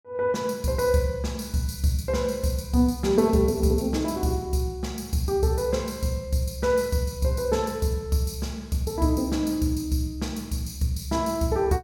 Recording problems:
none

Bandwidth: 17.5 kHz